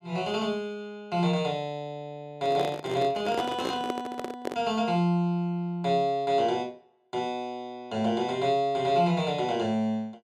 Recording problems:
handling noise; from 2.5 to 4.5 s; peak 0 dB vs average level

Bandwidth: 13.5 kHz